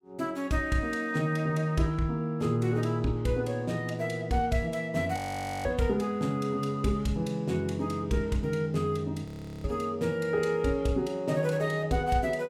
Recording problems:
audio freezing; at 5 s and at 9.5 s

